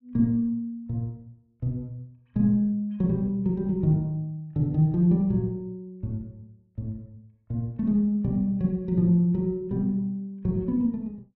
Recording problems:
none

